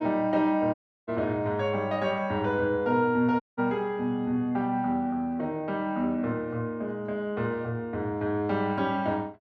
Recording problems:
audio cutting out; at 0.5 s and at 3.5 s

